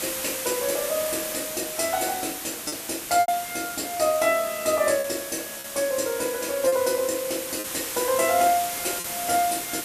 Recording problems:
hiss; slope -1 dB per octave, SNR 5 dB
lost packets; 3% of the sound replaced, filled with repeated pitch periods

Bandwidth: 14.5 kHz